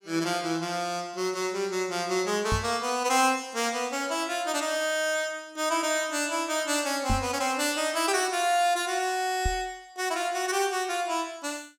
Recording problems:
microphone thump; at 2.5 s, at 7 s and at 9.5 s; peak +2 dB vs average level

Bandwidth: 17 kHz